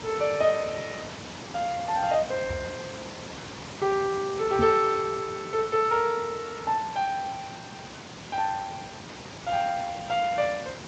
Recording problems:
codec artefacts; Speex, then Vorbis, log-spectral distance 10 dB
background hiss; slope -3 dB per octave, SNR 12 dB
microphone thump; at 2.5 s and at 4.5 s; peak +1 dB vs average level

